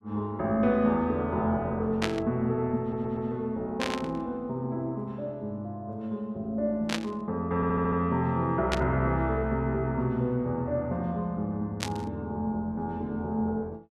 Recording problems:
static burst; 5 times, first at 2 s; peak +4 dB vs average level
audio stuttering; at 3 s and at 7.5 s

